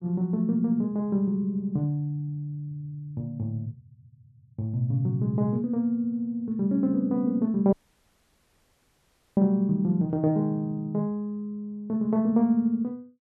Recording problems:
audio cutting out; at 7.5 s for 1.5 s

